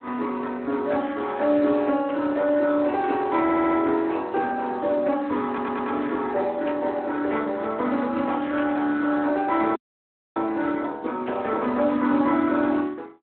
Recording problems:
telephone audio; 220 Hz to 3.8 kHz, Speex
burst of static; 4 times, first at 2 s; peak -8 dB vs average level
audio stuttering; at 3.5 s and at 5.5 s
dropout; at 10 s for 0.5 s

